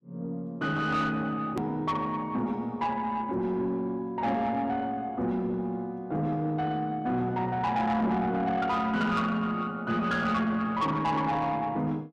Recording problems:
distorted audio; soft clipping, signal-to-distortion ratio 12 dB
click at an edit; at 1.5 s

